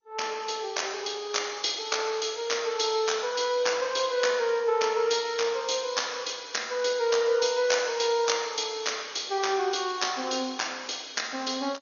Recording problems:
lossy compression; Vorbis, then MP2, log-spectral distance 7 dB, nothing above 6.7 kHz

